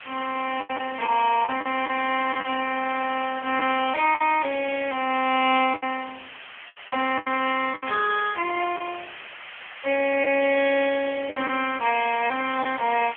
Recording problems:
telephone audio; 300 Hz to 3.3 kHz, AMR-NB
hiss; SNR 15 dB
lost packets; 6% of the sound replaced, filled with the last packet

